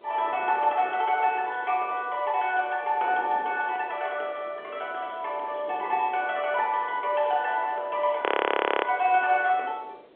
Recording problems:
phone line; 340 Hz to 3.4 kHz, G.711
wind on the microphone; below 1.8 kHz, SNR 5 dB
frozen audio; at 8 s for 0.5 s

